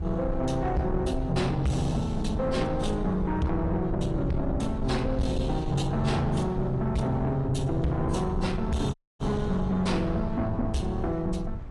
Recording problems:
lossy codec; AAC, log-spectral distance 2 dB, nothing above 10.4 kHz
distorted audio; soft clipping, signal-to-distortion ratio 10 dB
low-frequency rumble; below 100 Hz, SNR 8 dB
wind on the microphone; below 290 Hz, SNR 15 dB
dropout; at 9 s

